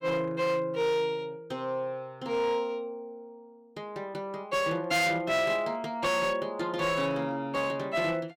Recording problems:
distortion; hard clipping, uneven, signal-to-distortion ratio 11 dB

